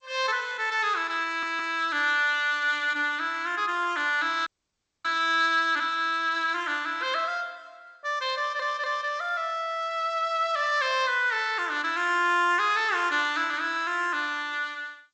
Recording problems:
codec artefacts; G.722, log-spectral distance 2 dB, nothing above 7.8 kHz
stutter; at 1.5 s and at 8.5 s
frozen audio; at 4.5 s for 0.5 s

